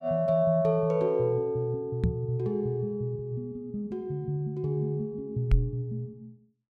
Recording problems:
microphone bump; at 2 s and at 5.5 s; peak +7 dB vs average level

